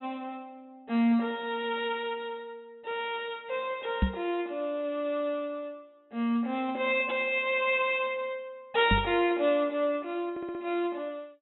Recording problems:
low-pass filter; nothing above 4 kHz
microphone thump; at 4 s and at 9 s; peak +7 dB vs average level
audio stuttering; at 10 s

